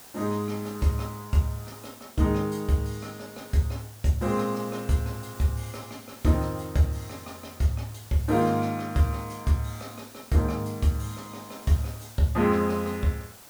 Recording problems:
background hiss; slope -2 dB per octave, SNR 19 dB

